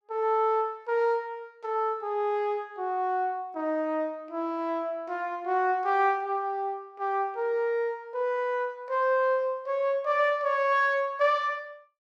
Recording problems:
none

